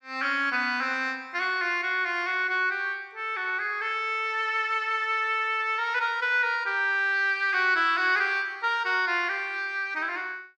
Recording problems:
none

